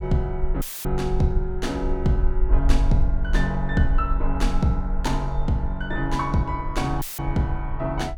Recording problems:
rumble; below 48 Hz, SNR 3 dB
audio cutting out; at 0.5 s and at 7 s; filled with static

